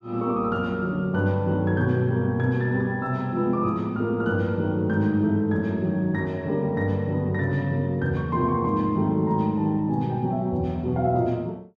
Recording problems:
none

